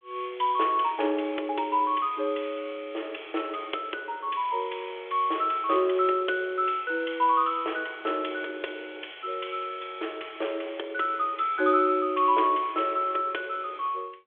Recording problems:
telephone audio; 260 Hz to 3.5 kHz, G.726

